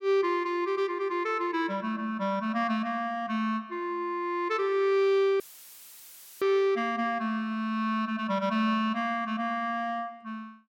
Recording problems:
audio cutting out; at 5.5 s for 1 s; filled with static

